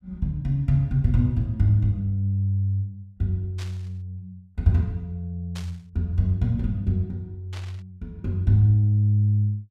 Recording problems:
burst of static; at 3.5 s, at 5.5 s and at 7.5 s; peak -12 dB vs average level

